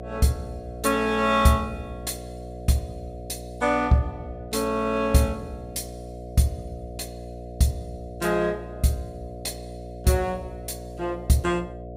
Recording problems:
hum; 60 Hz, harmonics up to 720 Hz, SNR 12 dB

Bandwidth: 15.5 kHz